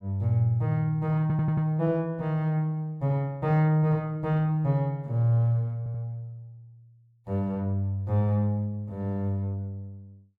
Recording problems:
stutter; at 1 s and at 6 s

